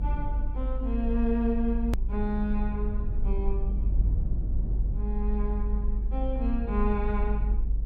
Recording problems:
low-frequency rumble; below 50 Hz, strongest tone 48 Hz, SNR -2 dB
hard cut with a click; at 2 s

